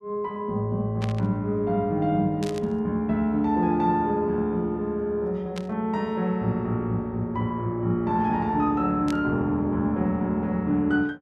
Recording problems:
burst of static; 4 times, first at 1 s; peak -7 dB vs average level

